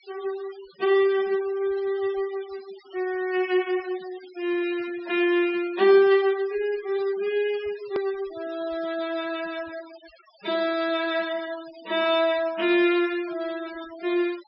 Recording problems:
treble cut off; nothing above 5.4 kHz
noise reduction artefacts; signal-to-artefact ratio 20 dB
hard cut with a click; at 8 s

